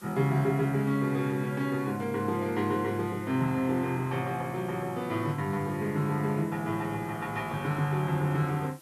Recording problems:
background hiss; SNR 24 dB

